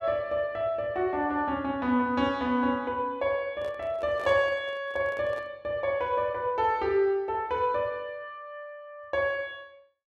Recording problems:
microphone handling noise; from 3.5 to 5.5 s; peak -9 dB vs average level

